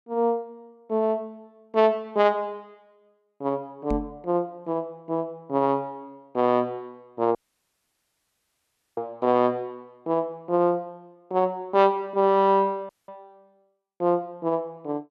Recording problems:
microphone thump; at 4 s; peak -2 dB vs average level
audio cutting out; at 7.5 s for 1.5 s and at 13 s

